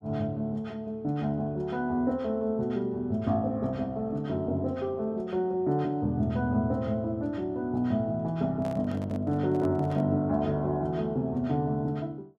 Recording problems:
microphone handling noise; from 8.5 to 10 s; peak -8 dB vs average level

